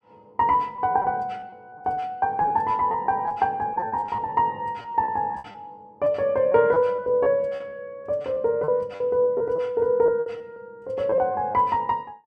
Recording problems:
lost packets; 11% of the sound replaced, filled with repeated pitch periods

